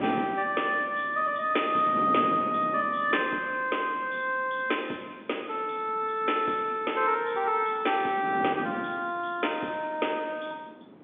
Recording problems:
phone line; 220 Hz to 3.6 kHz, G.711
wind noise; below 470 Hz, SNR 12 dB

